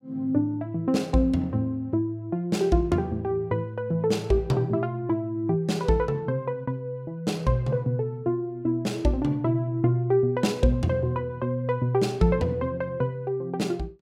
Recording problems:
none

